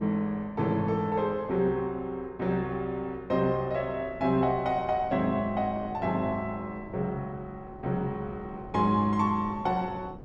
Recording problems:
wind noise; below 390 Hz, SNR 19 dB

